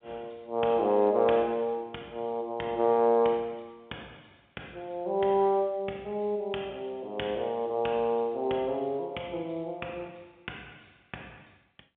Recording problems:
phone line; 280 Hz to 3.4 kHz, G.711

